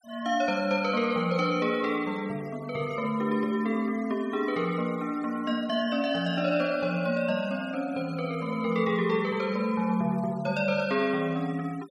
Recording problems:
noise reduction artefacts; signal-to-artefact ratio 23 dB

